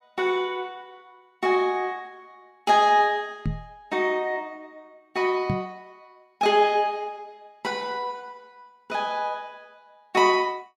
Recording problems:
microphone bump; at 3.5 s and at 5.5 s; peak +2 dB vs average level

